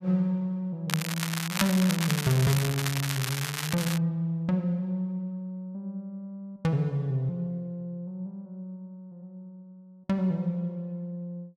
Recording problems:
crackling; from 1 to 4 s; loose cable, SNR 3 dB

